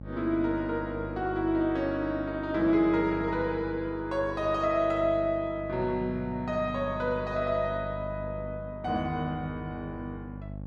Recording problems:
electrical hum; 50 Hz, harmonics up to 600 Hz, SNR 12 dB

